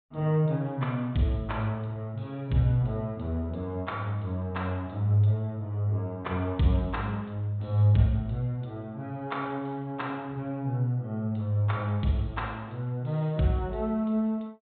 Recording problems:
low-pass filter; nothing above 4 kHz

